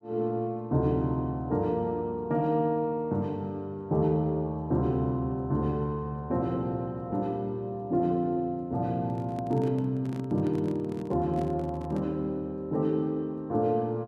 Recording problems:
handling noise; from 9 to 12 s; peak -6 dB vs average level

